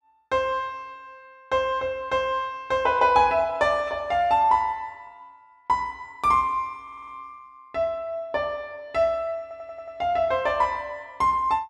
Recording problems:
stutter; at 7 s and at 9.5 s

